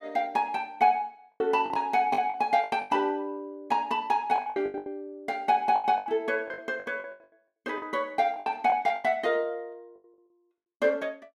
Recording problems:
lost packets; 13% of the sound replaced, filled with the last packet

